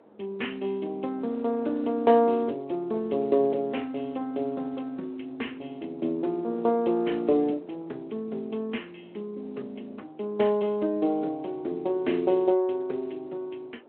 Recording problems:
telephone audio; 240 Hz to 3.1 kHz, Speex
wind noise; below 680 Hz, SNR 23 dB

